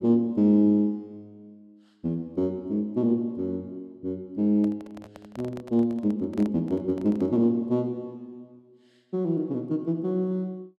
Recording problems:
handling noise; from 4.5 to 7.5 s; peak -12 dB vs average level

